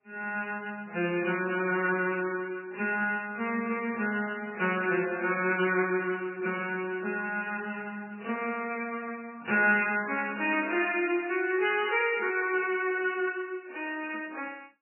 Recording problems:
lossy compression; AAC, then MP3, log-spectral distance 4 dB, nothing above 2.7 kHz
burst of static; at 5 s, at 10 s and at 13 s; peak -14 dB vs average level

